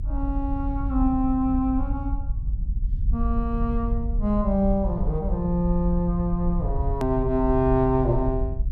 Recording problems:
rumble; below 66 Hz, SNR 4 dB
hard cut with a click; at 7 s

